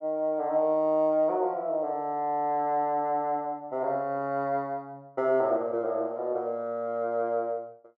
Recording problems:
none

